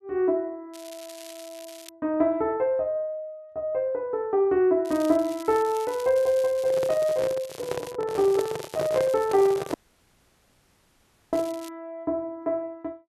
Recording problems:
crackling; from 0.5 to 2 s, from 5 to 8 s and from 8 to 12 s; loose cable, SNR 20 dB
microphone handling noise; from 6.5 to 12 s; peak -2 dB vs average level
audio cutting out; at 9.5 s for 1.5 s

